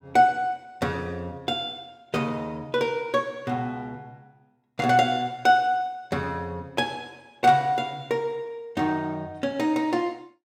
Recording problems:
none

